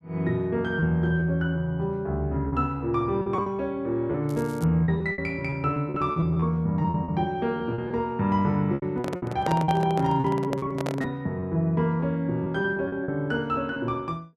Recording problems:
lost packets; 9% of the sound replaced, filled with repeated pitch periods
crackling; at 4.5 s; loose cable, SNR 23 dB
microphone handling noise; from 9 to 11 s; peak 0 dB vs average level

